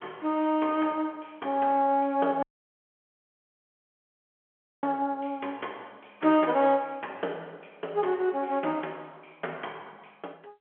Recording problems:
telephone audio; 320 Hz to 3.3 kHz, G.711
dropout; at 2.5 s for 2.5 s

